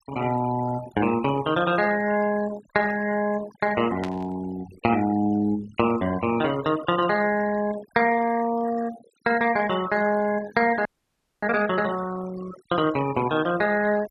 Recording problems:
noise reduction artefacts; signal-to-artefact ratio 15 dB
burst of static; at 4 s; peak -9 dB vs average level
frozen audio; at 11 s for 0.5 s

